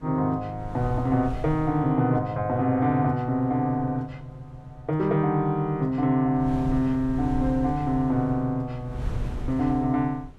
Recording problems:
wind noise; below 110 Hz, SNR 12 dB

